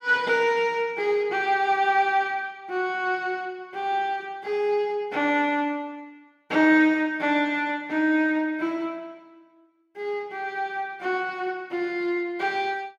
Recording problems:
none

